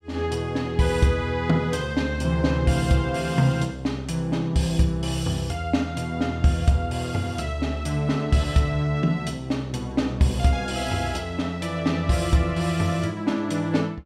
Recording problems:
none

